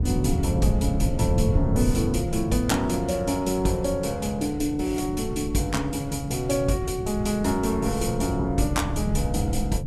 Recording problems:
wind on the microphone; below 160 Hz, SNR 4 dB

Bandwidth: 14.5 kHz